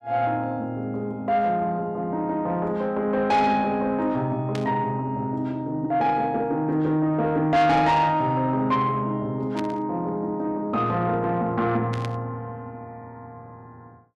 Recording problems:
distortion; soft clipping, signal-to-distortion ratio 11 dB
burst of static; at 4.5 s, at 9.5 s and at 12 s; peak -7 dB vs average level

